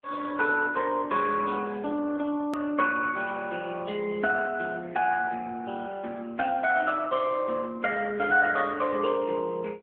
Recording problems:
telephone audio; 240 Hz to 3.5 kHz, AMR-NB
edit click; at 2.5 s

